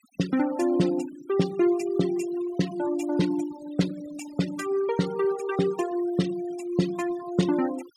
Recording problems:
noise reduction artefacts; signal-to-artefact ratio 16 dB

